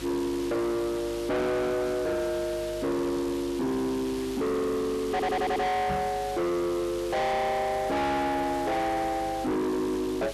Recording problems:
distorted audio; soft clipping, signal-to-distortion ratio 7 dB
hum; 50 Hz, harmonics up to 1.4 kHz, SNR 17 dB
hiss; slope 0 dB per octave, SNR 14 dB
stutter; at 5 s
knock on the microphone; at 6 s; peak 0 dB vs average level

